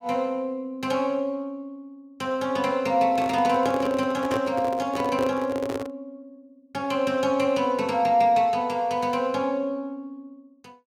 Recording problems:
handling noise; from 3 to 6 s; peak -3 dB vs average level

